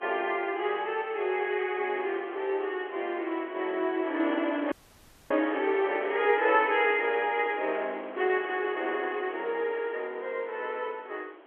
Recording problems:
telephone audio; 280 Hz to 3.4 kHz, G.711
wind on the microphone; below 1.2 kHz, SNR 15 dB
dropout; at 4.5 s for 0.5 s

